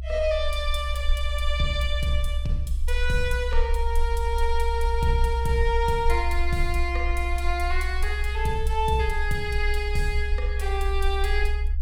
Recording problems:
rumble; below 64 Hz, SNR 1 dB

